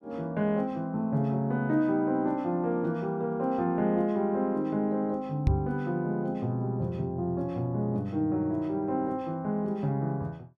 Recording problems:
microphone bump; at 5.5 s; peak +7 dB vs average level

